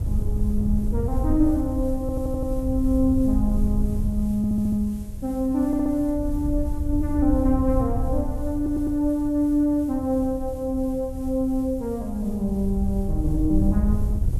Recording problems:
background hiss; SNR 27 dB
wind on the microphone; below 86 Hz, SNR 5 dB
audio stuttering; 4 times, first at 2 s

